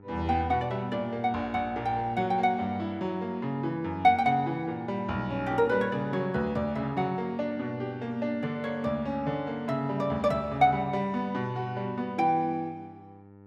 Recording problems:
hum; 50 Hz, harmonics up to 1.4 kHz, SNR 23 dB

